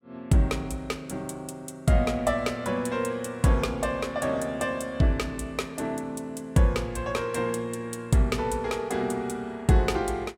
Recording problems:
none

